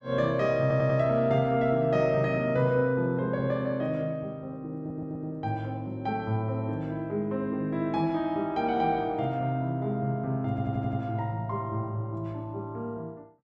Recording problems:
stutter; at 0.5 s, at 5 s and at 10 s

